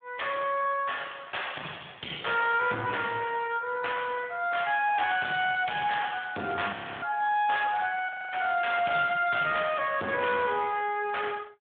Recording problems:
telephone audio; 190 Hz to 3.5 kHz, Speex
distortion; soft clipping, signal-to-distortion ratio 11 dB
frozen audio; at 6.5 s and at 8 s

